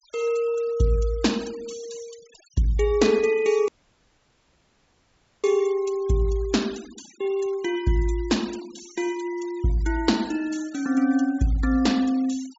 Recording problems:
low-pass filter; nothing above 8 kHz
denoising artefacts; signal-to-artefact ratio 21 dB
dropout; at 3.5 s for 2 s

